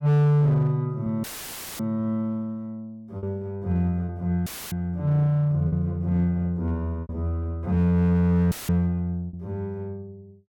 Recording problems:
distortion; hard clipping, uneven, signal-to-distortion ratio 10 dB
lost packets; 3% of the sound replaced, filled with repeated pitch periods
audio cutting out; at 1 s for 0.5 s, at 4.5 s and at 8.5 s; filled with static

